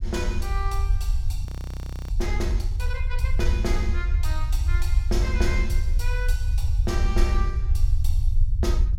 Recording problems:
low-frequency rumble; below 68 Hz, SNR -7 dB
audio freezing; at 1.5 s for 0.5 s

